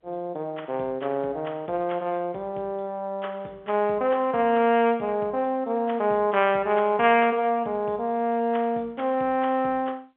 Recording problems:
phone line; 240 Hz to 3.4 kHz, G.711

